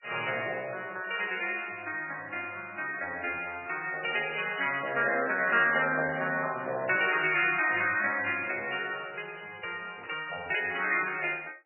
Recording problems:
codec artefacts; MP3, log-spectral distance 5 dB, nothing above 2.5 kHz
static burst; at 4 s and at 10 s; peak -14 dB vs average level

